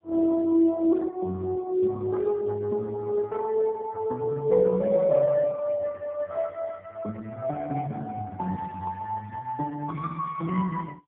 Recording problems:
telephone audio; 130 Hz to 2.2 kHz, AMR-NB, then MP3

